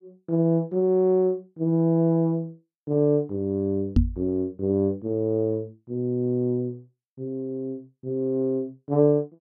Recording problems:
microphone thump; at 4 s; peak +8 dB vs average level

